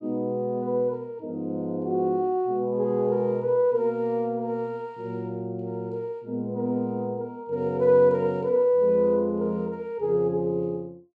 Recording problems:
none

